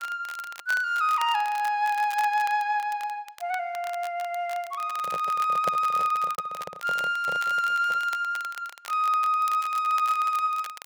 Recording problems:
crackling; vinyl, SNR 18 dB
lost packets; 1.5% of the sound replaced, filled with repeated pitch periods
microphone handling noise; from 5 to 8 s; peak -2 dB vs average level

